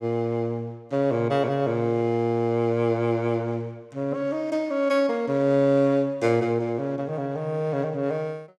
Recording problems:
none

